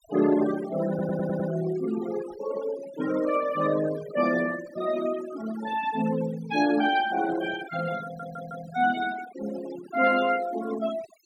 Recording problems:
noise reduction artefacts; signal-to-artefact ratio 13 dB
stutter; at 1 s and at 8 s

